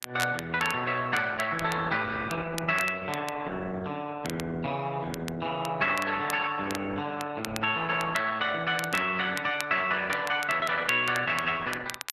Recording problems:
lossy codec; Opus, log-spectral distance 4 dB
crackling; vinyl, SNR 13 dB

